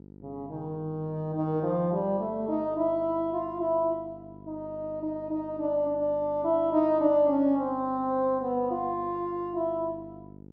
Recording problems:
hum; 50 Hz, harmonics up to 550 Hz, SNR 20 dB

